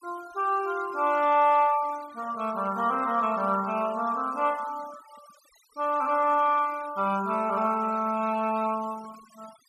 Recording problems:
denoising artefacts; signal-to-artefact ratio 22 dB

